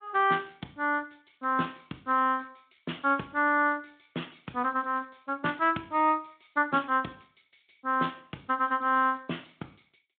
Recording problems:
telephone audio; 170 Hz to 3.6 kHz, Speex

